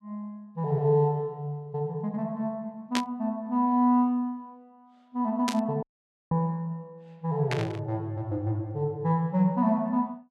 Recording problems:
static burst; at 3 s, at 5.5 s and at 7.5 s; peak +3 dB vs average level
dropout; at 6 s

